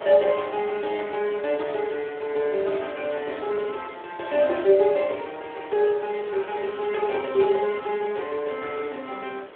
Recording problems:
telephone audio; 320 Hz to 3.5 kHz, Speex
background hiss; SNR 19 dB

